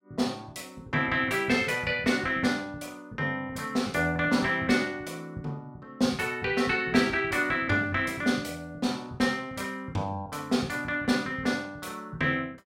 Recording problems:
none

